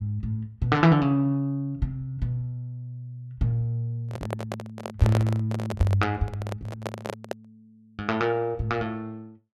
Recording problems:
handling noise; from 4 to 7.5 s; peak +2 dB vs average level

